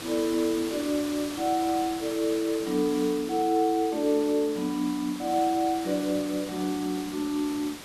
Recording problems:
hiss; slope -2 dB per octave, SNR 12 dB

